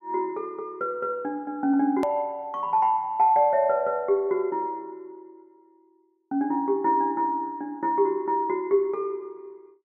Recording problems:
click at an edit; at 2 s

